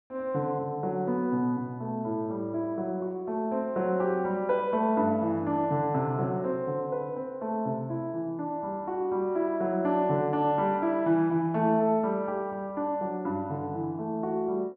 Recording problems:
none

